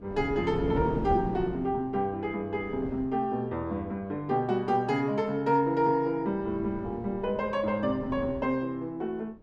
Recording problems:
wind noise; below 350 Hz, SNR 9 dB

